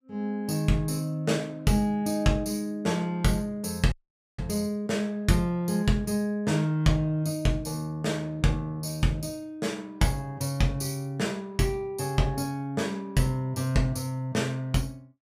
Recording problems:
audio cutting out; at 4 s

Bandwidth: 15.5 kHz